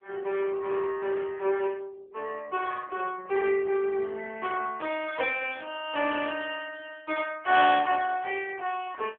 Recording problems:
phone line; 320 Hz to 3.3 kHz, AMR-NB

